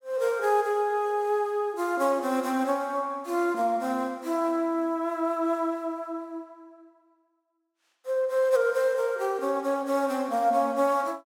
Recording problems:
none

